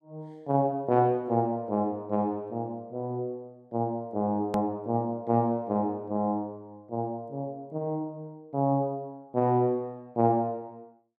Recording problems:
edit click; at 4.5 s

